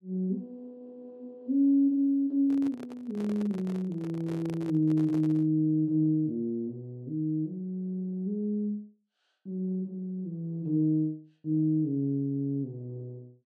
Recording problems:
microphone handling noise; from 2.5 to 5.5 s; peak -9 dB vs average level

